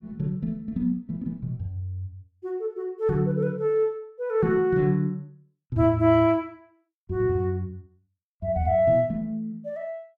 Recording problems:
none

